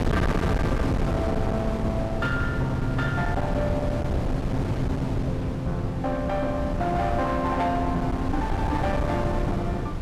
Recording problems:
distortion; hard clipping, uneven, signal-to-distortion ratio 6 dB
wind noise; below 320 Hz, SNR 0 dB

